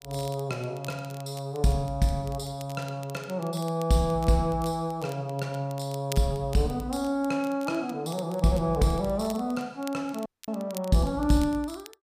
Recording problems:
crackle; vinyl, SNR 20 dB
dropout; at 10 s

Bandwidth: 15 kHz